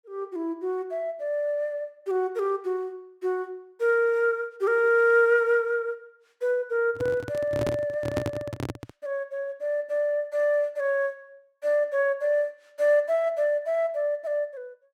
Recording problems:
microphone handling noise; from 7 to 9 s; peak +1 dB vs average level

